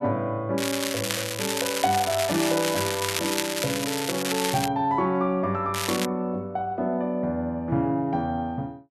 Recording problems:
crackle; from 0.5 to 4.5 s and at 5.5 s; loose cable, SNR 2 dB

